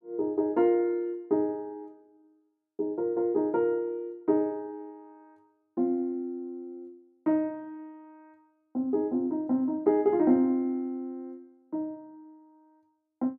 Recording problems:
none

